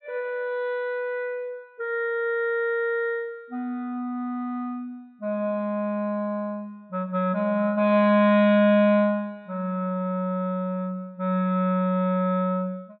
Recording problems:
low-pass filter; nothing above 4.4 kHz

